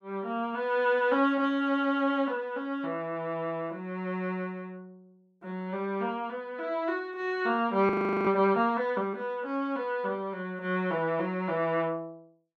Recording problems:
audio freezing; at 8 s

